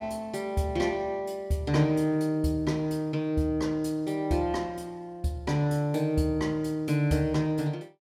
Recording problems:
none

